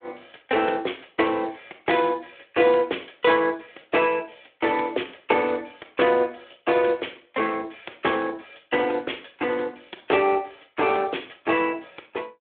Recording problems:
telephone audio; 300 Hz to 3.6 kHz, Speex

